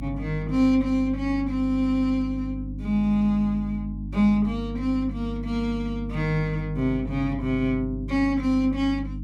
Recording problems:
mains hum; 50 Hz, harmonics up to 300 Hz, SNR 9 dB

